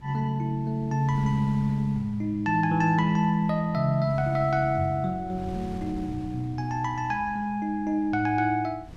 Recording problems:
wind on the microphone; below 200 Hz, SNR 19 dB

